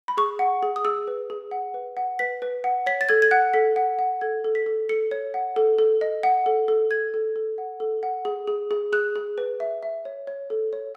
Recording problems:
none

